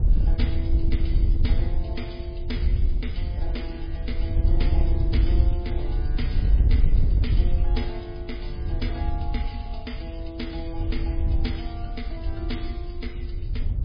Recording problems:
lossy compression; MP3, log-spectral distance 2 dB, nothing above 5 kHz
wind on the microphone; below 72 Hz, SNR -10 dB

